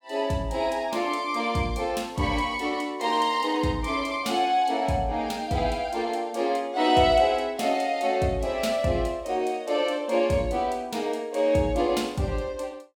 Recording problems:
none

